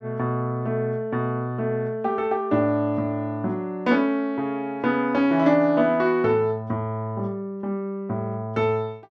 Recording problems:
none

